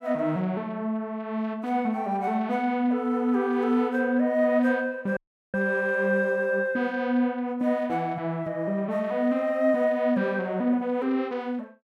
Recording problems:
dropout; at 5 s

